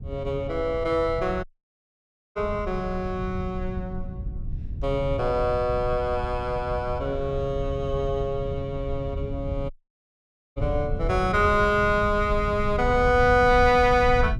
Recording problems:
rumble; below 110 Hz, SNR 8 dB
dropout; at 1.5 s for 1 s and at 9.5 s for 1 s

